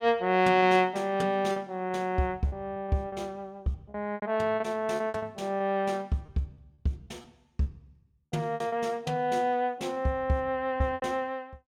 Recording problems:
lost packets; 9% of the sound replaced, filled with repeated pitch periods

